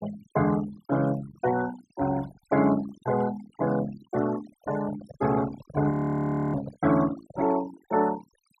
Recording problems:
noise reduction artefacts; signal-to-artefact ratio 15 dB
handling noise; from 4.5 to 7.5 s; peak -8 dB vs average level
frozen audio; at 6 s for 0.5 s

